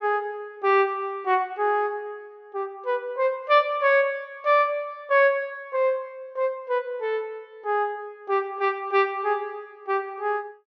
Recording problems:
treble cut off; nothing above 6.2 kHz

